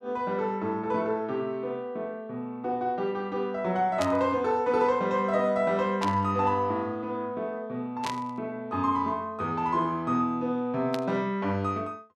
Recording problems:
burst of static; 4 times, first at 4 s; peak -2 dB vs average level

